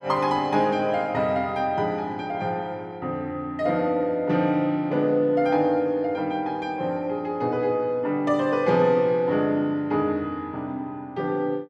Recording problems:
none

